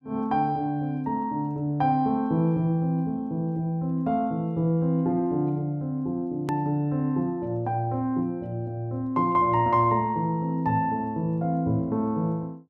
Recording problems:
edit click; at 6.5 s

